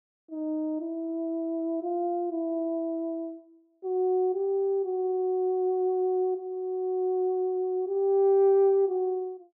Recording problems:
none

